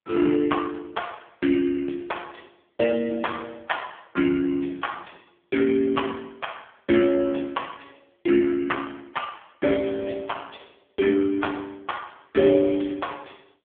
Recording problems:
telephone audio; 240 Hz to 3.3 kHz, AMR-NB

